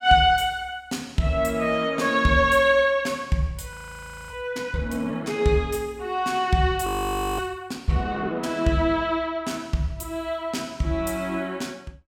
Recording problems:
audio freezing; at 3.5 s for 0.5 s and at 7 s for 0.5 s

